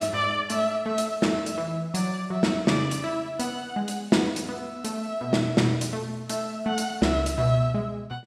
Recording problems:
none

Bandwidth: 14.5 kHz